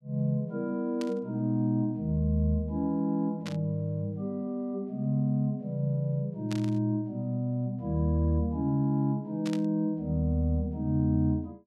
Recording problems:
burst of static; 4 times, first at 1 s; peak -7 dB vs average level

